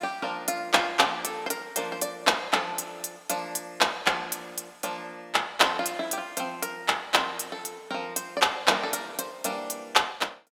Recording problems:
none

